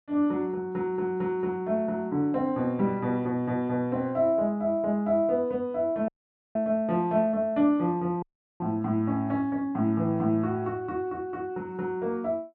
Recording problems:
audio cutting out; at 6 s and at 8 s

